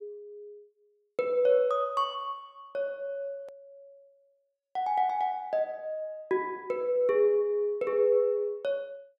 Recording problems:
hard cut with a click; at 3.5 s

